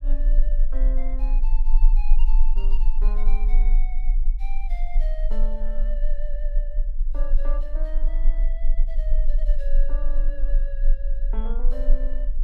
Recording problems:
rumble; below 30 Hz, strongest tone 20 Hz, SNR -16 dB

